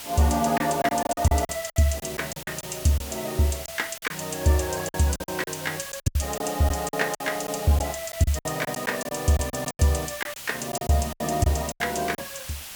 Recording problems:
background hiss; slope +1 dB per octave, SNR 10 dB
packet loss; 13% of the sound replaced, filled with silence

